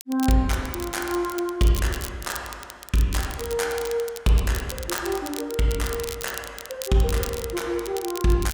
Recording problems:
crackle; vinyl, SNR 11 dB

